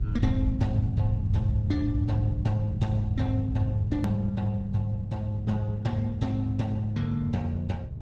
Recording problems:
lossy codec; Opus, log-spectral distance 2 dB, nothing above 13.1 kHz
hum; 60 Hz, harmonics up to 840 Hz, SNR 20 dB
low-frequency rumble; below 120 Hz, SNR 3 dB
hard cut with a click; at 4 s

